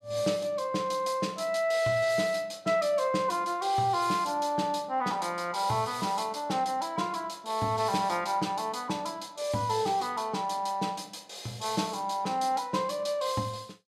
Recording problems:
none

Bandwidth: 15 kHz